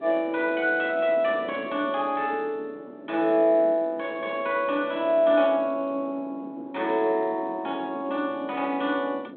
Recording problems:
phone line; 240 Hz to 3.9 kHz, G.726
wind noise; below 440 Hz, SNR 18 dB

